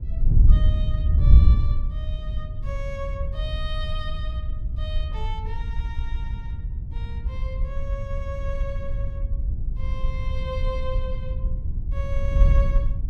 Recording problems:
wind noise; below 70 Hz, SNR -12 dB

